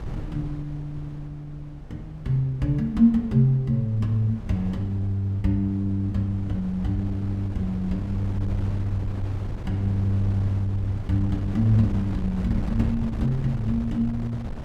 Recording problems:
wind on the microphone; below 150 Hz, SNR 10 dB

